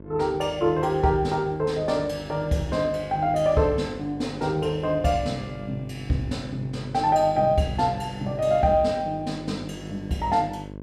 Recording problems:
hum; 50 Hz, harmonics up to 1.1 kHz, SNR 15 dB

